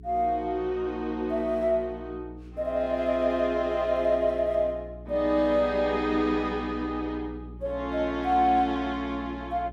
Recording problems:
electrical hum; 60 Hz, harmonics up to 420 Hz, SNR 17 dB

